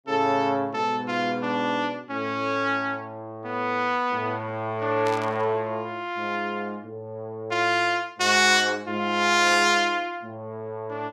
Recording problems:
burst of static; at 5 s and at 9.5 s; peak -9 dB vs average level

